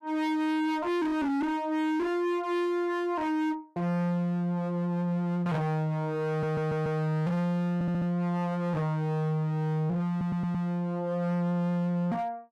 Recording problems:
distortion; hard clipping, uneven, signal-to-distortion ratio 6 dB
stutter; at 6.5 s, at 7.5 s and at 10 s

